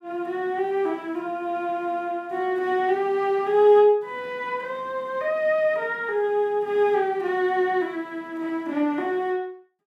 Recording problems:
none

